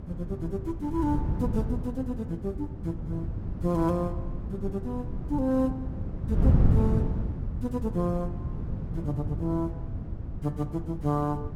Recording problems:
wind on the microphone; below 160 Hz, SNR 0 dB

